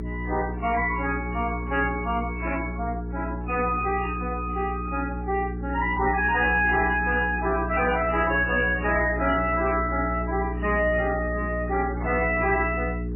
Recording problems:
lossy codec; MP3, then MP3, log-spectral distance 5 dB, nothing above 2.5 kHz
distortion; soft clipping, signal-to-distortion ratio 10 dB
hum; 60 Hz, harmonics up to 420 Hz, SNR 7 dB
burst of static; 4 times, first at 2.5 s; peak -5 dB vs average level

